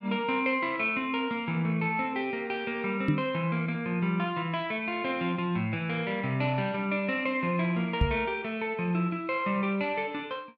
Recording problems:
microphone thump; at 3 s and at 8 s; peak +7 dB vs average level

